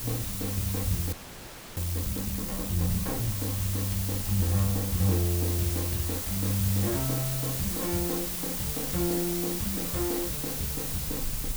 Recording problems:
hiss; slope -1 dB per octave, SNR 1 dB
low-frequency rumble; below 76 Hz, strongest tone 22 Hz, SNR 16 dB
audio freezing; at 1 s for 0.5 s

